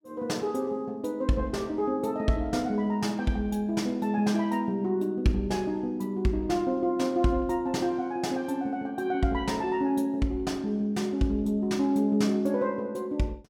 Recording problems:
none

